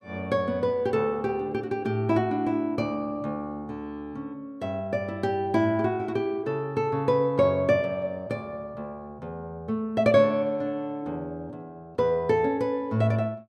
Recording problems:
none

